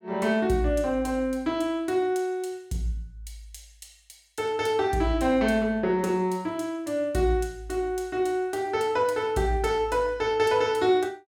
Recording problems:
none

